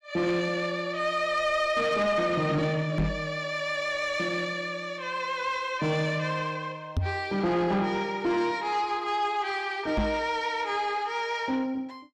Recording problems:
distortion; soft clipping, signal-to-distortion ratio 11 dB
microphone thump; at 3 s, at 7 s and at 10 s; peak +4 dB vs average level

